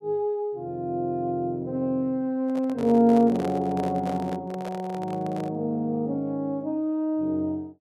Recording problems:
microphone handling noise; from 2.5 to 5.5 s; peak -5 dB vs average level

